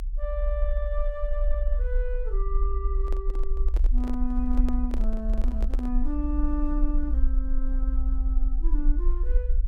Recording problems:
rumble; below 52 Hz, SNR -6 dB
handling noise; from 3 to 6 s; peak 0 dB vs average level

